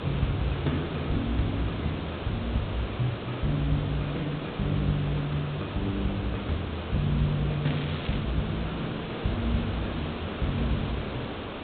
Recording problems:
treble missing; nothing above 4 kHz
background hiss; SNR 5 dB
crackle; at 7.5 s; loose cable, SNR 12 dB

